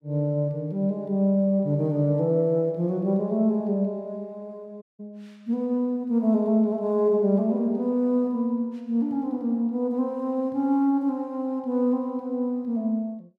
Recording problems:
audio cutting out; at 5 s

